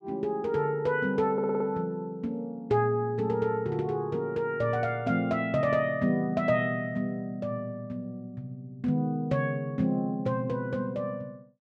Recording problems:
audio stuttering; at 1.5 s

